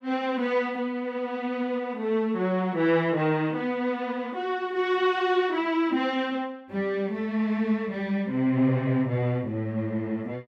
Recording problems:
none

